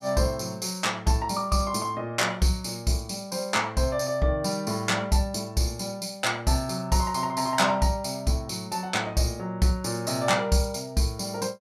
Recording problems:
none

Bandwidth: 14.5 kHz